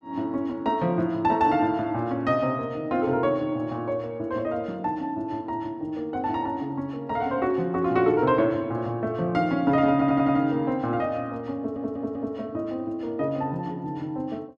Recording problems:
stutter; at 10 s and at 12 s

